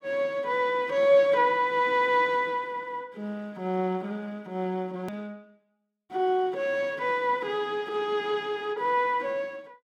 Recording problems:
click at an edit; at 5 s

